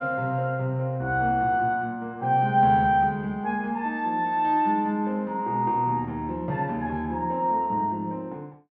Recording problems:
none

